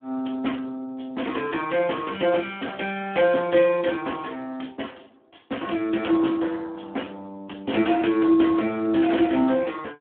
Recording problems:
telephone audio; 220 Hz to 3.3 kHz, Speex

